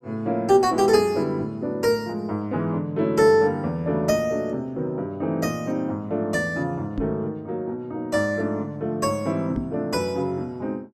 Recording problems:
microphone thump; at 7 s and at 9.5 s; peak -1 dB vs average level

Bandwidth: 14.5 kHz